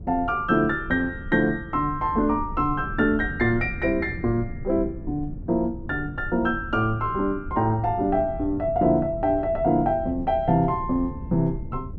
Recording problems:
wind on the microphone; below 150 Hz, SNR 12 dB

